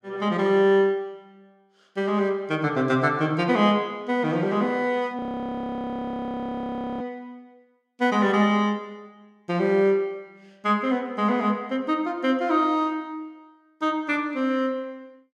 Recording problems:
frozen audio; at 5 s for 2 s

